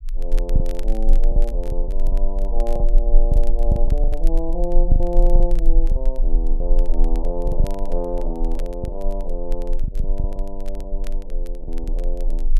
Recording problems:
low-frequency rumble; below 32 Hz, strongest tone 22 Hz, SNR -6 dB
crackling; vinyl, SNR 20 dB
packet loss; 9% of the sound replaced, filled with the last packet

